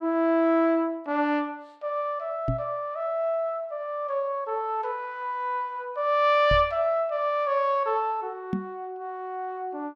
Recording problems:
microphone bump; at 2.5 s, at 6.5 s and at 8.5 s; peak +2 dB vs average level

